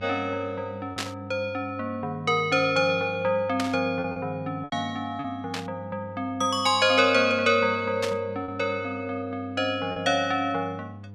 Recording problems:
hum; 50 Hz, harmonics up to 700 Hz, SNR 17 dB
lost packets; 3% of the sound replaced, filled with repeated pitch periods
static burst; 4 times, first at 1 s; peak -1 dB vs average level

